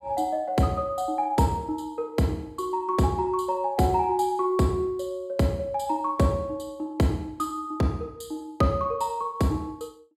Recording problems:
none

